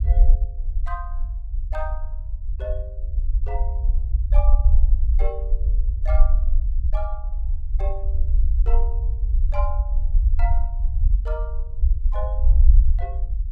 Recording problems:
rumble; below 54 Hz, SNR -13 dB

